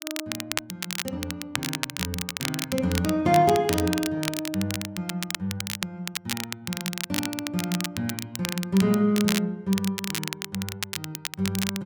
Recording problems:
crackling; vinyl, SNR 4 dB

